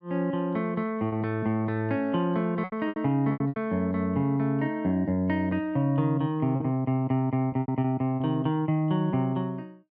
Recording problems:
lost packets; 6% of the sound replaced, filled with repeated pitch periods

